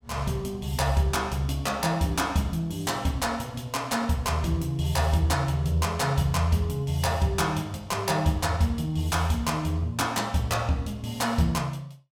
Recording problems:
none

